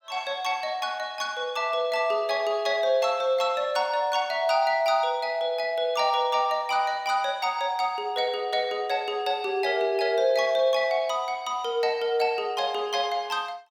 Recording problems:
none

